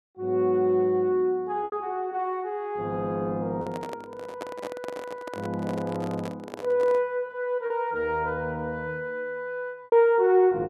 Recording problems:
lost packets; 2% of the sound replaced, filled with repeated pitch periods
handling noise; from 3.5 to 7 s; peak -5 dB vs average level

